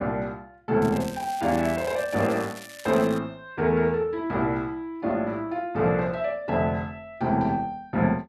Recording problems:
crackle; from 1 to 3 s; loose cable, SNR 17 dB

